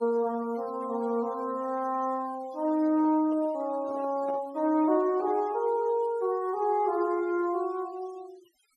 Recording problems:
denoising artefacts; signal-to-artefact ratio 25 dB
microphone handling noise; from 2.5 to 5.5 s; peak -10 dB vs average level

